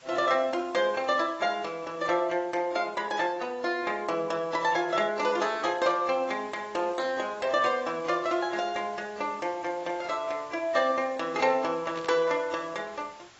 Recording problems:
codec artefacts; AAC, log-spectral distance 5 dB, nothing above 7.8 kHz
background hiss; SNR 24 dB
burst of static; at 12 s; peak -10 dB vs average level

